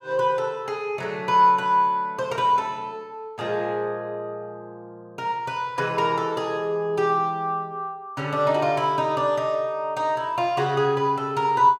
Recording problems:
none

